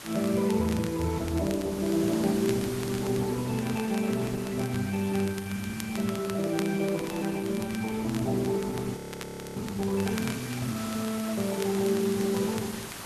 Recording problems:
codec artefacts; Opus, log-spectral distance 6 dB, nothing above 13.1 kHz
hiss; SNR 13 dB
wind noise; below 430 Hz, SNR 21 dB
crackle; vinyl, SNR 17 dB
audio freezing; at 9 s for 0.5 s

